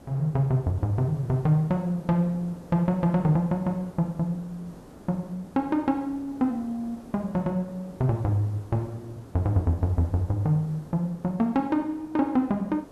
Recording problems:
background hiss; SNR 20 dB

